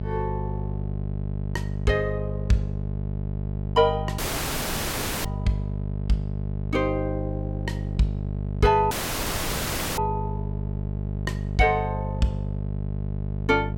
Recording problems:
hum; 50 Hz, harmonics up to 650 Hz, SNR 3 dB
dropout; at 4 s for 1 s and at 9 s for 1 s

